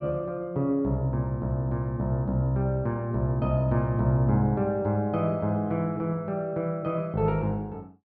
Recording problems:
low-pass filter; nothing above 5.5 kHz

